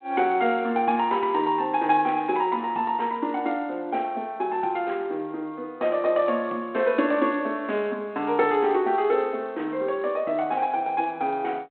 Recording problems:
phone line; 240 Hz to 3.3 kHz, G.726

